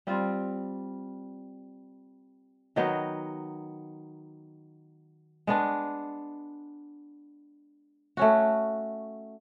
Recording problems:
none

